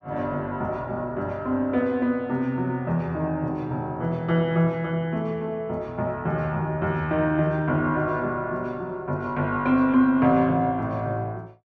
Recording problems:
none

